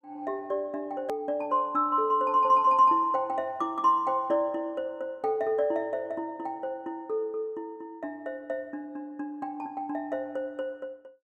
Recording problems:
click at an edit; at 1 s

